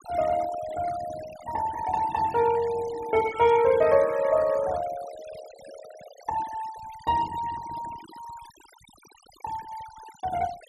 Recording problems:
noise reduction artefacts; signal-to-artefact ratio 18 dB

